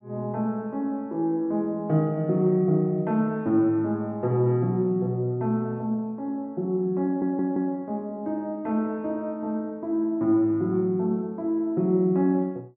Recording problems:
audio stuttering; at 7 s

